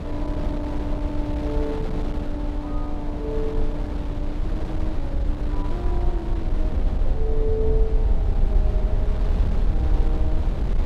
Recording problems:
rumble; below 56 Hz, SNR -6 dB
wind on the microphone; below 480 Hz, SNR 1 dB

